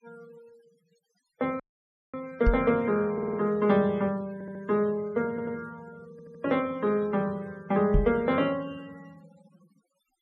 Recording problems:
noise reduction artefacts; signal-to-artefact ratio 25 dB
dropout; at 1.5 s for 0.5 s
microphone bump; at 2.5 s and at 8 s; peak +6 dB vs average level
audio stuttering; 4 times, first at 3 s

